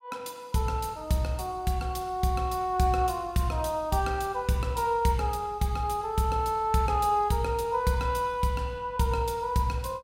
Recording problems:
none

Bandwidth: 16 kHz